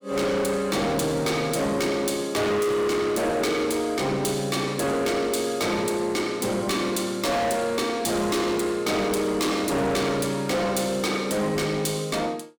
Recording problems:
distorted audio; hard clipping, uneven, signal-to-distortion ratio 7 dB

